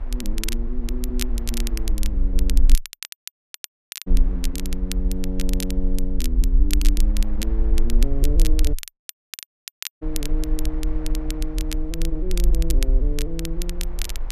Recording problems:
rumble; below 42 Hz, strongest tone 20 Hz, SNR -7 dB
wind on the microphone; below 1.1 kHz, SNR 16 dB
crackling; vinyl, SNR 3 dB
dropout; at 3 s for 1.5 s and at 8.5 s for 1.5 s

